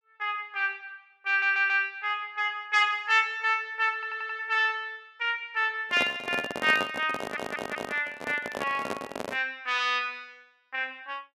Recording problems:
audio stuttering; at 1.5 s, at 4 s and at 7 s
handling noise; from 6 to 9.5 s; peak 0 dB vs average level

